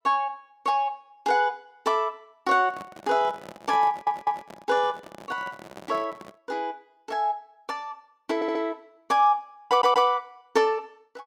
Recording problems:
microphone handling noise; from 2.5 to 6.5 s; peak -11 dB vs average level
audio stuttering; at 4 s, at 8.5 s and at 9.5 s

